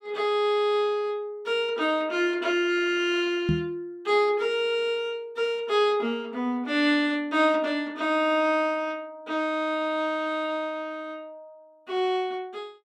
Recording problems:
knock on the microphone; at 3.5 s; peak +4 dB vs average level

